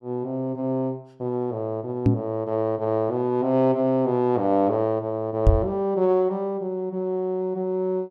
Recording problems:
microphone bump; at 2 s and at 5.5 s; peak +9 dB vs average level

